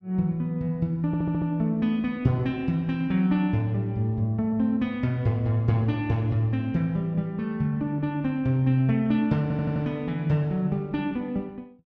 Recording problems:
audio stuttering; at 1 s and at 9.5 s

